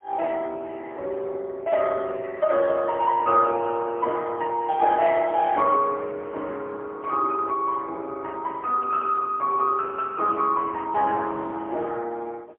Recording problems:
phone line; 300 Hz to 3.3 kHz, AMR-NB, then MP3

